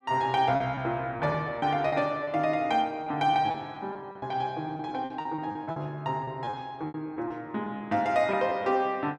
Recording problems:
packet loss; 11% of the sound replaced, filled with repeated pitch periods

